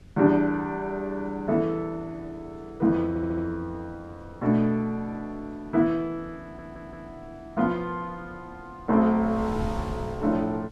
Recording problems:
wind noise; below 170 Hz, SNR 18 dB
audio stuttering; at 3 s and at 6.5 s

